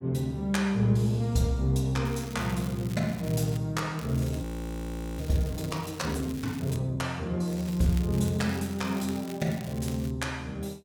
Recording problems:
crackling; from 2 to 3.5 s, from 4 to 7 s and from 7.5 to 10 s; loose cable, SNR 18 dB
audio freezing; at 4.5 s for 1 s

